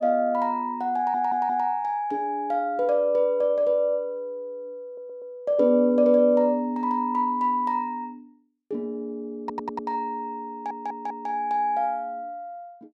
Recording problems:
stutter; 4 times, first at 1 s

